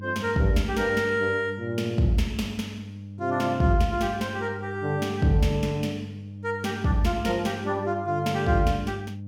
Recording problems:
hum; 50 Hz, harmonics up to 500 Hz, SNR 12 dB

